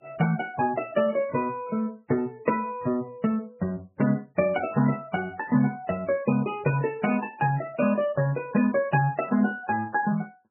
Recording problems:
lossy codec; MP3, log-spectral distance 2 dB, nothing above 2.5 kHz

